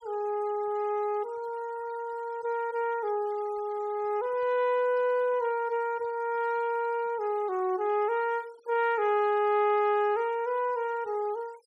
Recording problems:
denoising artefacts; signal-to-artefact ratio 26 dB

